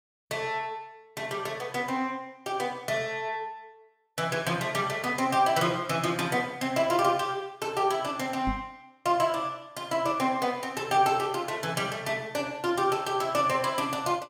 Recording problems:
microphone thump; at 8.5 s; peak -2 dB vs average level

